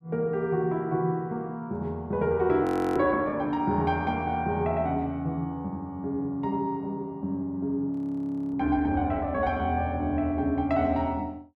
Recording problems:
audio freezing; at 2.5 s and at 8 s for 0.5 s

